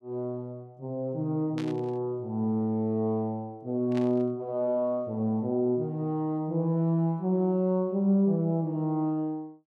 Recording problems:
static burst; at 1.5 s and at 4 s; peak -10 dB vs average level

